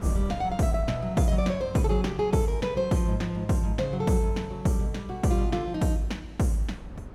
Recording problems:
wind on the microphone; below 230 Hz, SNR 20 dB

